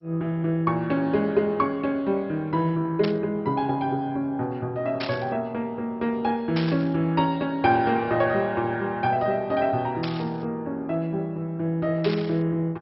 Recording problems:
lossy compression; MP2, log-spectral distance 2 dB, nothing above 4.9 kHz
burst of static; 5 times, first at 3 s; peak -3 dB vs average level

